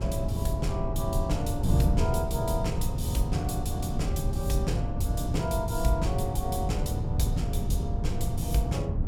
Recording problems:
wind on the microphone; below 140 Hz, SNR -3 dB

